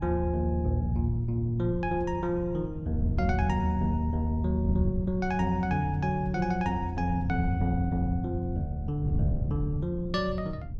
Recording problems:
wind noise; below 130 Hz, SNR 6 dB

